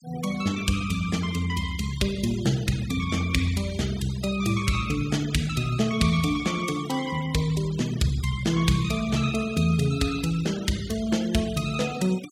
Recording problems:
denoising artefacts; signal-to-artefact ratio 17 dB

